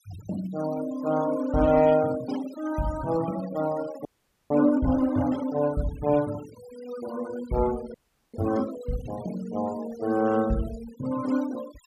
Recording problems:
denoising artefacts; signal-to-artefact ratio 17 dB
frozen audio; at 4 s and at 8 s

